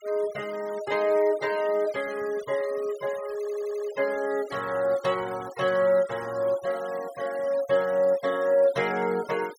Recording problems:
denoising artefacts; signal-to-artefact ratio 19 dB
audio stuttering; at 3.5 s

